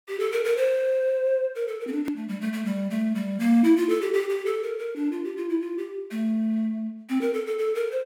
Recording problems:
click at an edit; at 2 s

